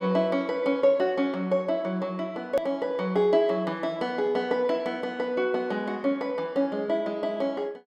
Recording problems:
hard cut with a click; at 2.5 s

